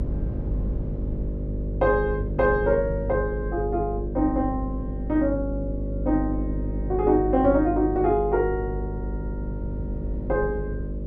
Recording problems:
electrical hum; 50 Hz, harmonics up to 600 Hz, SNR 6 dB
wind noise; below 160 Hz, SNR 13 dB

